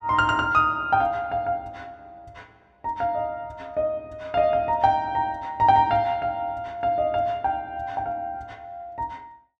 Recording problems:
none

